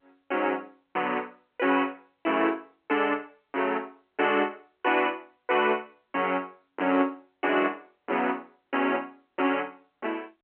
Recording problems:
phone line; 240 Hz to 3.1 kHz, G.711

